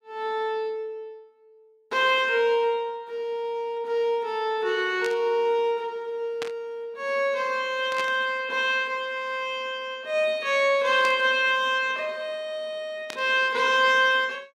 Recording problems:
burst of static; 5 times, first at 5 s; peak -5 dB vs average level

